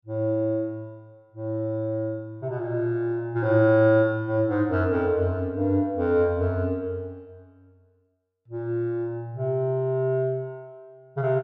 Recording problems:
none

